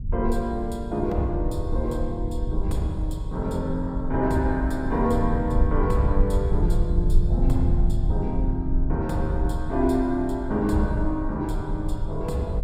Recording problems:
low-frequency rumble; below 72 Hz, SNR 2 dB

